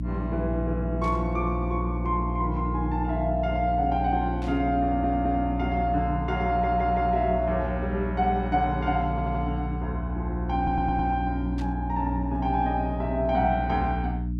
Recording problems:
hum; 60 Hz, harmonics up to 300 Hz, SNR 3 dB
burst of static; at 1 s, at 4.5 s and at 12 s; peak -13 dB vs average level
audio stuttering; 4 times, first at 5 s

